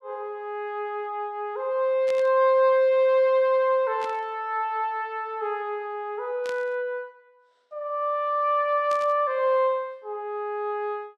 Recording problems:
burst of static; 4 times, first at 2 s; peak -11 dB vs average level

